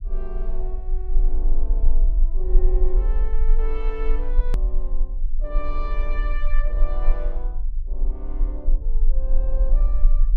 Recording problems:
low-frequency rumble; below 34 Hz, strongest tone 22 Hz, SNR -12 dB
click at an edit; at 4.5 s

